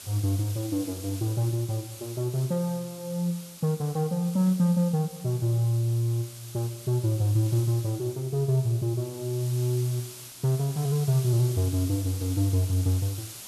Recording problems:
background hiss; SNR 15 dB

